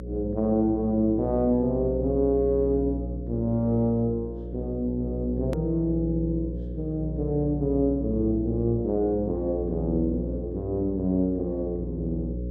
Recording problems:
electrical hum; 60 Hz, harmonics up to 540 Hz, SNR 7 dB
click at an edit; at 5.5 s

